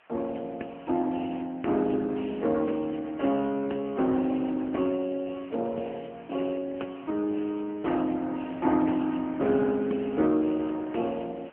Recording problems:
telephone audio; 220 Hz to 3.2 kHz, AMR-NB
hiss; SNR 27 dB

